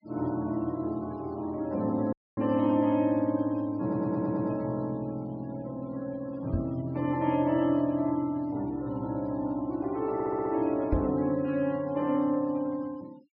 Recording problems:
low-pass filter; nothing above 5.5 kHz
denoising artefacts; signal-to-artefact ratio 26 dB
audio cutting out; at 2 s
audio stuttering; at 4 s and at 10 s
microphone bump; at 6.5 s and at 11 s; peak +4 dB vs average level

